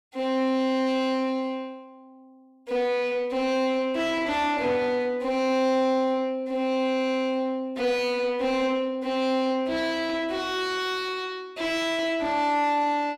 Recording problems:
distortion; soft clipping, signal-to-distortion ratio 9 dB

